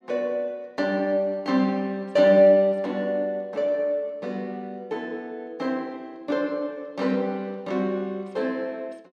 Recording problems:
none

